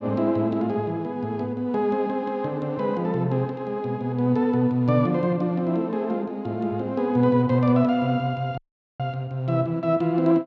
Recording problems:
audio cutting out; at 8.5 s

